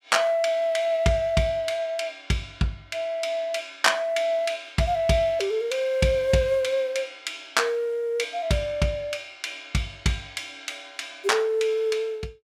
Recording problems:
none

